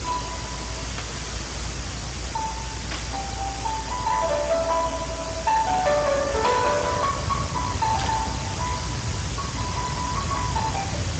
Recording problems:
lossy compression; Speex, log-spectral distance 13 dB, nothing above 7.6 kHz
distortion; hard clipping, signal-to-distortion ratio 12 dB
background hiss; slope -2 dB per octave, SNR 7 dB
rumble; below 160 Hz, SNR 8 dB
static burst; 4 times, first at 1 s; peak -1 dB vs average level

